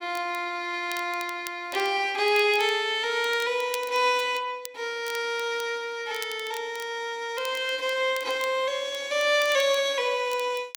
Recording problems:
crackling; vinyl, SNR 18 dB

